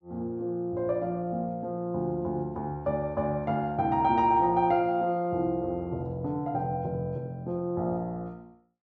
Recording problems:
treble missing; nothing above 8 kHz

